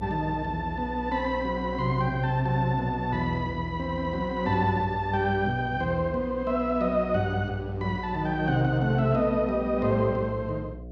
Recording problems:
hum; 60 Hz, harmonics up to 720 Hz, SNR 13 dB

